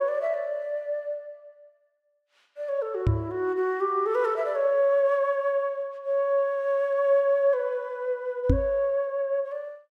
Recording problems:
microphone thump; at 3 s and at 8.5 s; peak +7 dB vs average level

